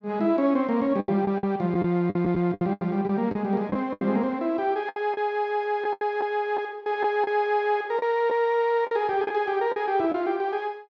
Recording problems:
lost packets; 9% of the sound replaced, filled with the last packet

